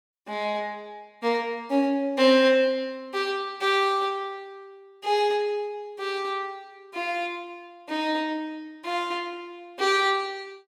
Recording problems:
none

